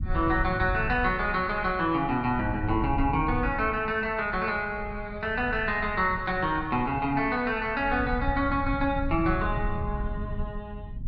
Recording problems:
low-frequency rumble; below 110 Hz, SNR 9 dB

